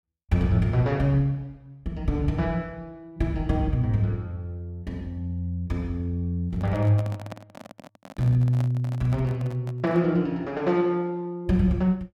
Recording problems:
microphone handling noise; from 6.5 to 10 s; peak -8 dB vs average level

